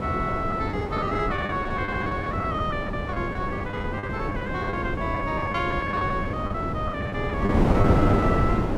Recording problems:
wind noise; below 480 Hz, SNR -1 dB
lost packets; 14% of the sound replaced, filled with the last packet

